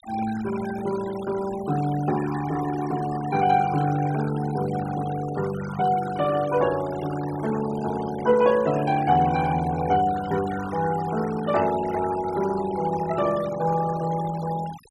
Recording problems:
noise reduction artefacts; signal-to-artefact ratio 14 dB

